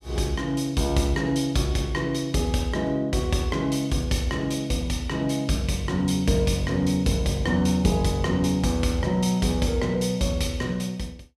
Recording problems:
none

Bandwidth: 15.5 kHz